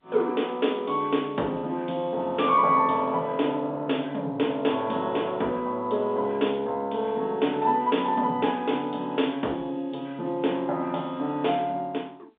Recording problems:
phone line; 220 Hz to 3.7 kHz, G.711

